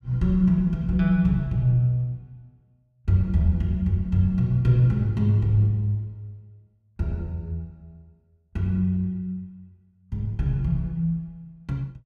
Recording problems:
none

